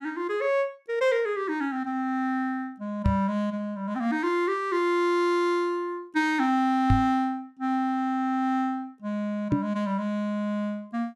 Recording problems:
knock on the microphone; at 3 s, at 7 s and at 9.5 s; peak +7 dB vs average level

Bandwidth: 13 kHz